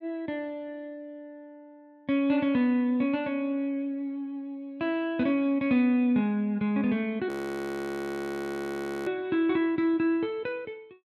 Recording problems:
frozen audio; at 7.5 s for 2 s

